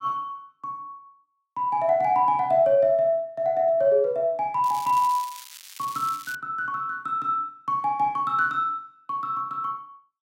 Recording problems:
crackle; from 4.5 to 6.5 s; loose cable, SNR 17 dB

